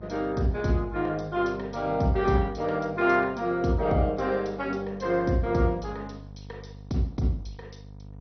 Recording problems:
lossy codec; MP2, log-spectral distance 3 dB, nothing above 6 kHz
hum; 50 Hz, harmonics up to 950 Hz, SNR 19 dB

